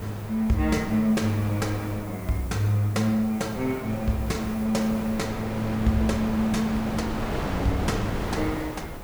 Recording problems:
hiss; SNR 21 dB
wind on the microphone; below 830 Hz, SNR 8 dB

